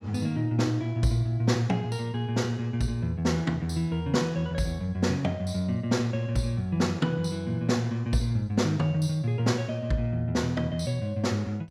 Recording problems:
none

